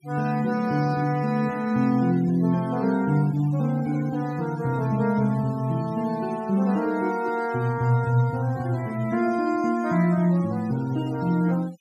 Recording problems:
noise reduction artefacts; signal-to-artefact ratio 21 dB

